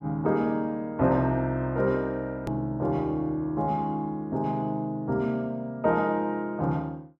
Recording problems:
click at an edit; at 2.5 s

